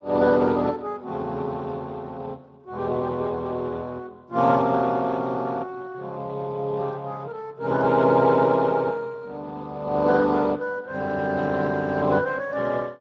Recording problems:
lossy compression; Speex, log-spectral distance 3 dB

